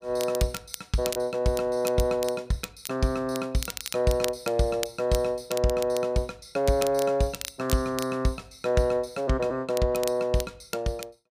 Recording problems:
crackling; vinyl, SNR 11 dB

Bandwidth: 15 kHz